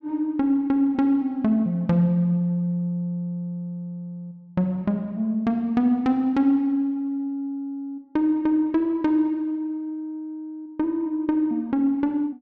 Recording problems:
none

